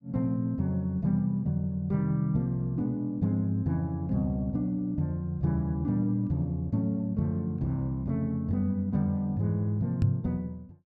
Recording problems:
microphone bump; at 10 s; peak +7 dB vs average level

